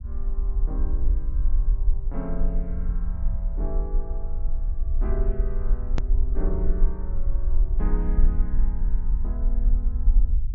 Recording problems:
treble cut off; nothing above 7.1 kHz
low-frequency rumble; below 42 Hz, strongest tone 22 Hz, SNR -11 dB
click at an edit; at 6 s

